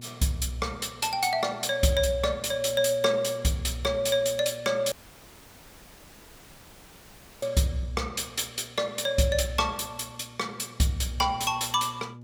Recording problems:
electrical hum; 60 Hz, harmonics up to 600 Hz, SNR 20 dB
audio cutting out; at 5 s for 2.5 s

